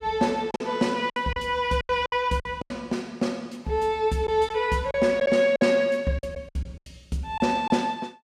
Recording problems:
lost packets; 10% of the sound replaced, filled with silence

